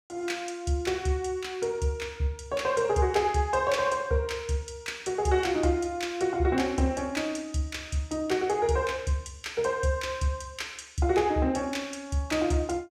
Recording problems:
none

